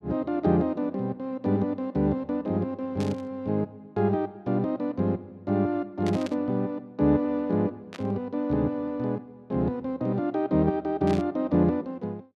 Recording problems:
static burst; 4 times, first at 3 s; peak -8 dB vs average level

